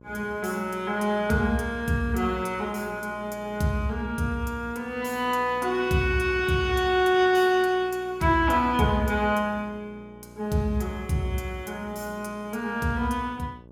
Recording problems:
hum; 60 Hz, harmonics up to 1.1 kHz, SNR 22 dB

